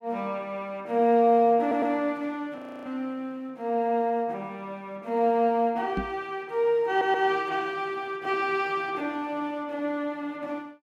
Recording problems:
audio stuttering; at 1.5 s and at 7 s
audio freezing; at 2.5 s
knock on the microphone; at 6 s; peak 0 dB vs average level

